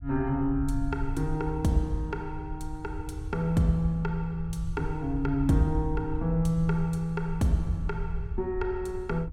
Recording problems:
low-frequency rumble; below 78 Hz, SNR 8 dB

